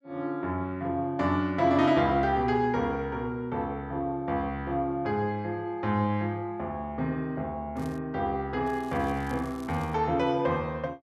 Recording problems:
crackle; at 8 s and from 8.5 to 10 s; loose cable, SNR 26 dB

